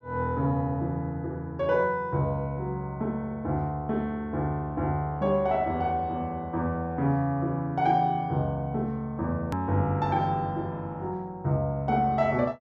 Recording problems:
edit click; at 9.5 s

